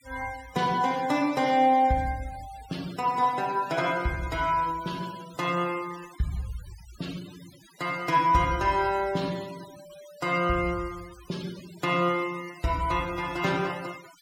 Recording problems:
denoising artefacts; signal-to-artefact ratio 19 dB

